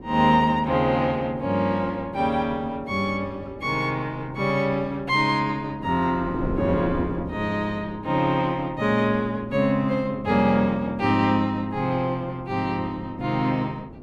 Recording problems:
wind noise; below 370 Hz, SNR 14 dB

